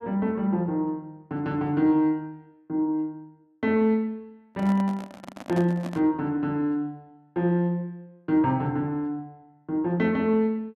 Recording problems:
handling noise; from 4.5 to 6 s; peak -6 dB vs average level

